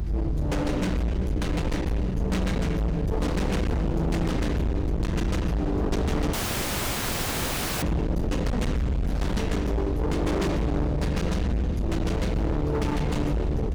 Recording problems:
distortion; hard clipping, signal-to-distortion ratio 6 dB
rumble; below 170 Hz, SNR 2 dB
wind noise; below 1.1 kHz, SNR 21 dB
dropout; at 6.5 s for 1.5 s

